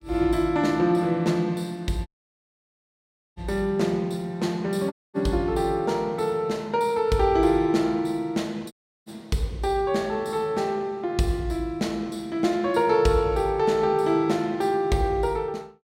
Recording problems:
dropout; at 2 s for 1.5 s, at 5 s and at 8.5 s

